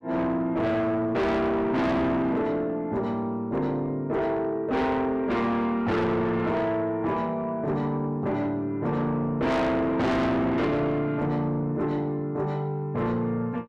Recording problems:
distorted audio; soft clipping, signal-to-distortion ratio 6 dB

